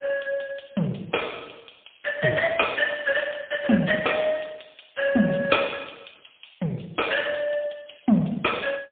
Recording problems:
telephone audio; 130 Hz to 3.4 kHz, AMR-NB, then MP3

